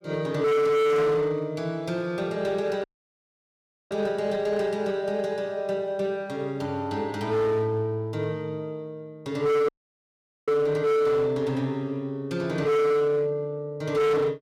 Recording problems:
distortion; hard clipping, signal-to-distortion ratio 7 dB
dropout; at 3 s for 1 s and at 9.5 s for 1 s

